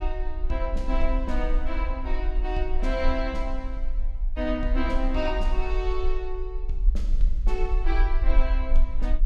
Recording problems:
low-frequency rumble; below 40 Hz, strongest tone 20 Hz, SNR -3 dB

